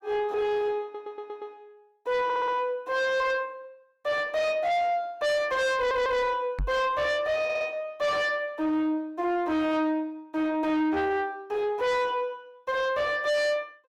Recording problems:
distortion; soft clipping, signal-to-distortion ratio 8 dB
audio stuttering; 4 times, first at 1 s
knock on the microphone; at 6.5 s; peak -1 dB vs average level

